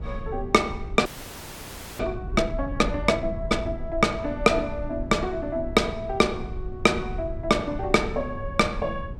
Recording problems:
low-frequency rumble; below 98 Hz, SNR 11 dB
frozen audio; at 1 s for 1 s

